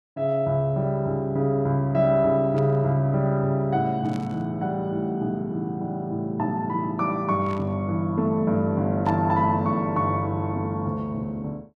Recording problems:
burst of static; 4 times, first at 2.5 s; peak -15 dB vs average level

